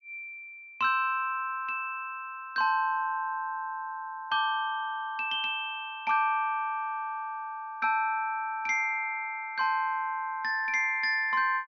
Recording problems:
treble missing; nothing above 6.3 kHz

